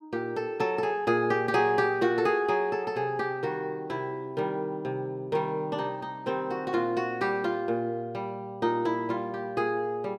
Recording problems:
none

